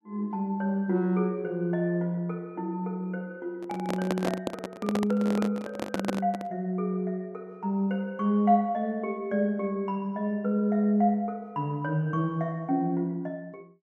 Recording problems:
handling noise; from 3.5 to 6.5 s; peak +4 dB vs average level

